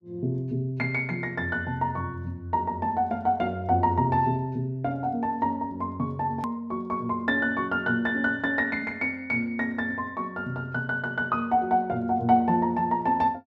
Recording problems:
edit click; at 6.5 s

